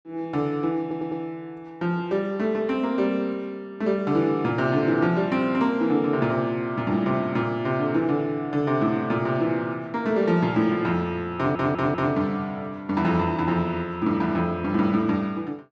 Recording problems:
stutter; at 1 s and at 11 s

